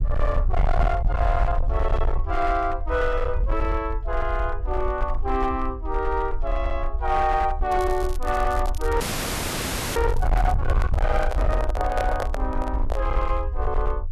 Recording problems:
distortion; hard clipping, signal-to-distortion ratio 7 dB
low-frequency rumble; below 62 Hz, SNR 1 dB
crackling; from 7.5 to 11 s; loose cable, SNR 19 dB
audio freezing; at 9 s for 1 s
microphone handling noise; from 11 to 13 s; peak +1 dB vs average level

